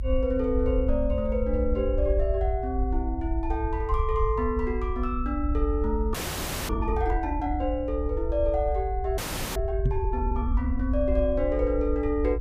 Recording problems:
low-frequency rumble; below 68 Hz, SNR 2 dB
frozen audio; at 6 s for 0.5 s and at 9 s
microphone bump; at 10 s; peak +5 dB vs average level

